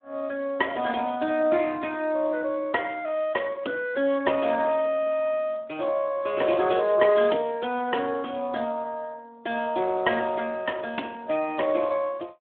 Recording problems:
phone line; 240 Hz to 3 kHz, Speex

